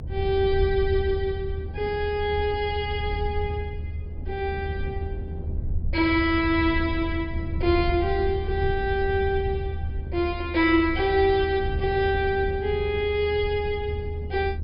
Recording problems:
treble missing; nothing above 5.5 kHz
low-frequency rumble; below 80 Hz, SNR 7 dB
wind noise; below 240 Hz, SNR 16 dB

